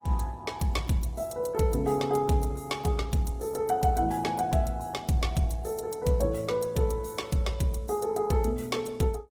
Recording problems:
lossy compression; Opus, log-spectral distance 3 dB, nothing above 19 kHz

